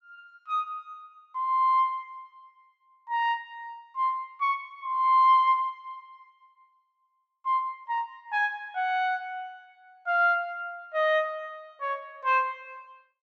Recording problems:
none

